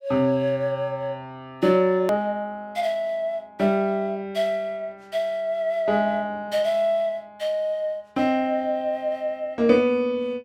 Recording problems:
edit click; at 2 s

